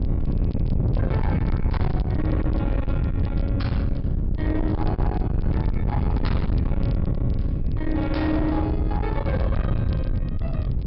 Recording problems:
treble missing; nothing above 5.3 kHz
distortion; soft clipping, signal-to-distortion ratio 7 dB
wind noise; below 150 Hz, SNR -4 dB
crackling; vinyl, SNR 27 dB

